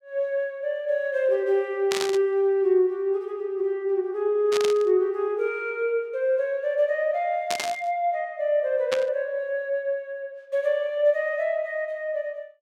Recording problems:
burst of static; 4 times, first at 2 s; peak +1 dB vs average level

